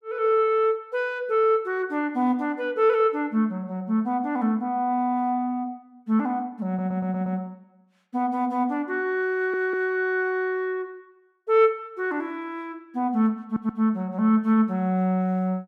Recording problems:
audio stuttering; at 6.5 s, at 9.5 s and at 13 s

